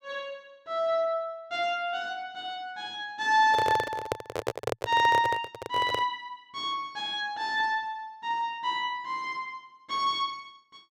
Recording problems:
handling noise; from 3.5 to 6 s; peak +3 dB vs average level

